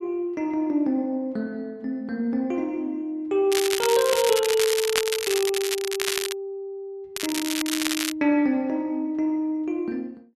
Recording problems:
crackle; from 3.5 to 6.5 s and at 7 s; loose cable, SNR 2 dB

